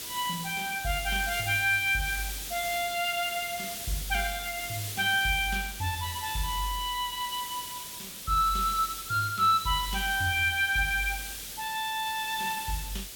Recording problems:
hiss; SNR 8 dB

